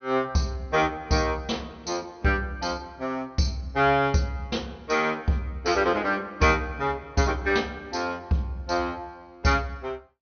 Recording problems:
treble cut off; nothing above 6.3 kHz

